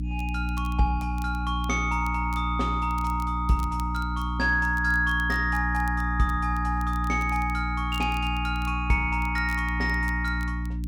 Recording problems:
mains hum; 60 Hz, harmonics up to 300 Hz, SNR 3 dB
crackling; vinyl, SNR 24 dB

